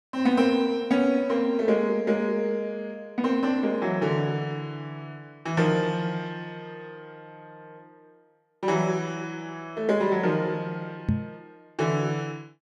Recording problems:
microphone thump; at 11 s; peak +5 dB vs average level

